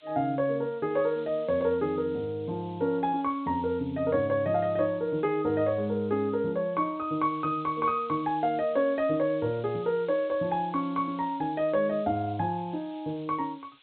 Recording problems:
treble missing; nothing above 4 kHz
hiss; SNR 27 dB

